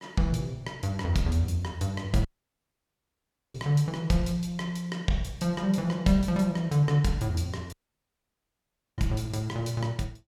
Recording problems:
dropout; at 2.5 s for 1.5 s and at 7.5 s for 1.5 s

